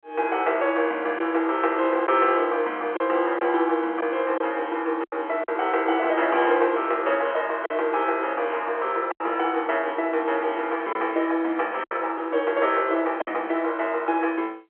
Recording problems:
telephone audio; 280 Hz to 3.3 kHz, G.711
lost packets; 3% of the sound replaced, filled with silence

